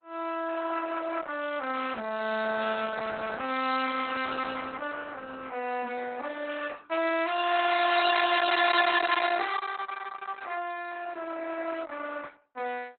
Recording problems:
codec artefacts; Opus, log-spectral distance 6 dB, nothing above 4 kHz

